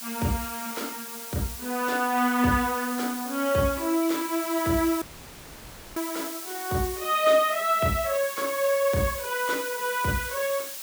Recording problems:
background hiss; slope +2 dB per octave, SNR 9 dB
audio cutting out; at 5 s for 1 s

